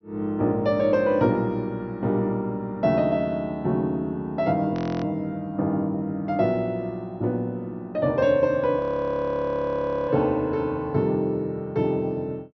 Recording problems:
treble missing; nothing above 6.2 kHz
frozen audio; at 4.5 s and at 9 s for 1.5 s

